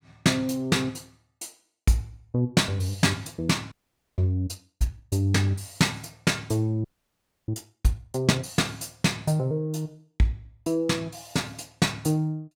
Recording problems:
frozen audio; at 3.5 s and at 7 s for 0.5 s

